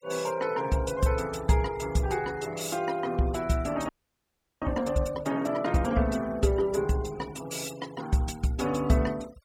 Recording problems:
noise reduction artefacts; signal-to-artefact ratio 19 dB
frozen audio; at 4 s for 0.5 s

